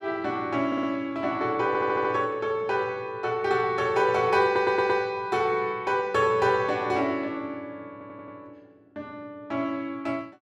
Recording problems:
audio stuttering; 4 times, first at 0.5 s

